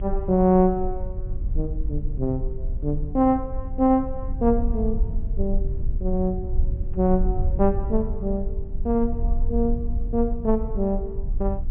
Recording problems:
low-pass filter; nothing above 3.3 kHz
rumble; below 58 Hz, SNR 5 dB

